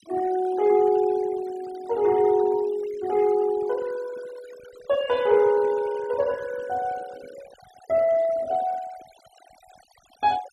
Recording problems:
denoising artefacts; signal-to-artefact ratio 21 dB

